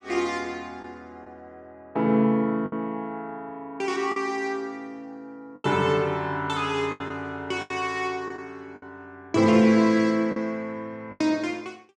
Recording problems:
lost packets; 5% of the sound replaced, filled with the last packet

